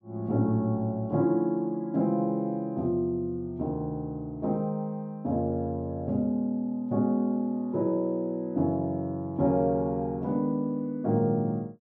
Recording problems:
none

